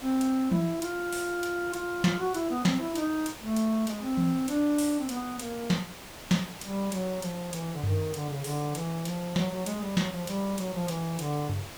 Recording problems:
background hiss; slope -3 dB per octave, SNR 13 dB

